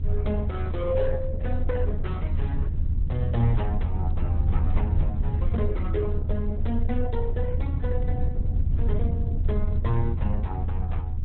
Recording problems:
lossy compression; AAC, then Opus, log-spectral distance 2 dB, nothing above 3.9 kHz
rumble; below 82 Hz, strongest tone 20 Hz, SNR -5 dB

